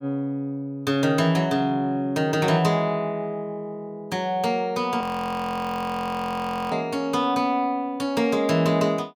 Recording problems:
frozen audio; at 5 s for 1.5 s

